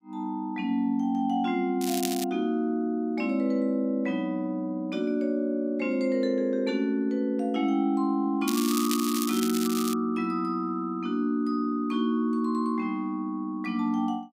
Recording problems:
crackle; at 2 s and from 8.5 to 10 s; loose cable, SNR 7 dB

